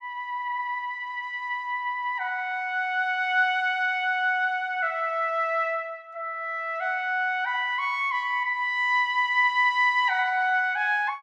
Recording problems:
none

